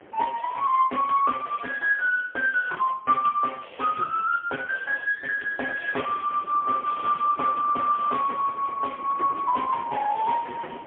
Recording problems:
telephone audio; 320 Hz to 3.3 kHz, AMR-NB, then MP3
wind on the microphone; below 940 Hz, SNR 19 dB

